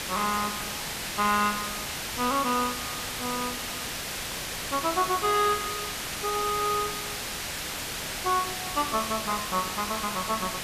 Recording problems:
hiss; slope -1 dB per octave, SNR 3 dB

